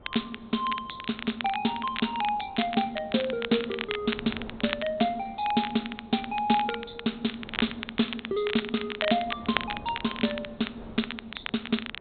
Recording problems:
treble missing; nothing above 4 kHz
wind noise; below 630 Hz, SNR 20 dB
crackling; vinyl, SNR 7 dB

